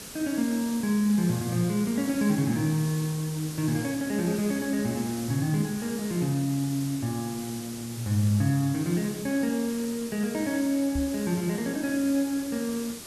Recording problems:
hiss; SNR 12 dB
microphone thump; at 11 s; peak -2 dB vs average level

